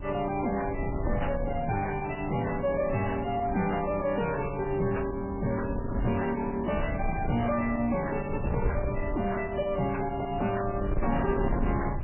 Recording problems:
lossy compression; MP3, log-spectral distance 5 dB, nothing above 2.7 kHz
distorted audio; soft clipping, signal-to-distortion ratio 10 dB
wind on the microphone; below 140 Hz, SNR 6 dB
crackle; from 1.5 to 4 s and from 6 to 7.5 s; loose cable, SNR 24 dB

